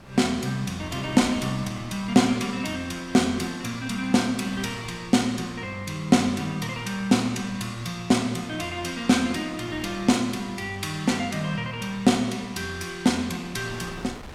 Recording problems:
wind noise; below 1.3 kHz, SNR 20 dB

